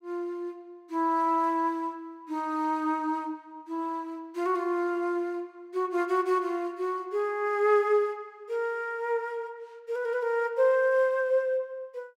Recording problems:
none

